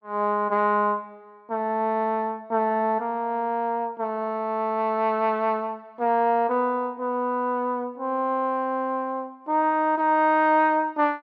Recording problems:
none

